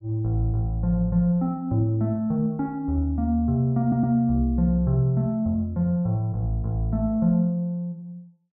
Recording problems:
audio stuttering; at 4 s

